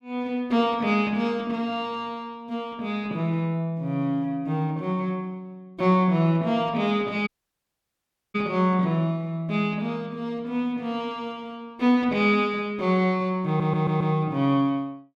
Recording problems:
audio cutting out; at 7.5 s for 1 s
audio stuttering; at 13 s

